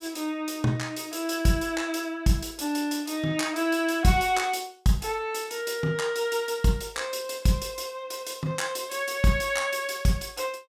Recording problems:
none

